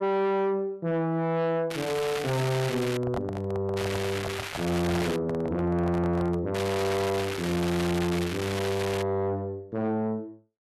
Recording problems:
distortion; soft clipping, signal-to-distortion ratio 6 dB
crackling; from 1.5 to 3 s, from 4 to 5 s and from 6.5 to 9 s; loose cable, SNR 7 dB
handling noise; from 3 to 6.5 s; peak -1 dB vs average level

